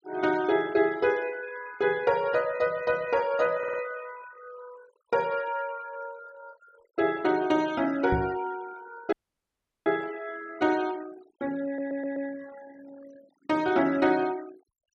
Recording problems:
noise reduction artefacts; signal-to-artefact ratio 21 dB
audio stuttering; at 3.5 s and at 12 s
microphone bump; at 8 s; peak +2 dB vs average level
audio cutting out; at 9 s for 0.5 s

